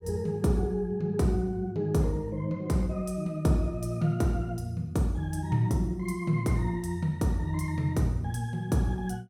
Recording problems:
none

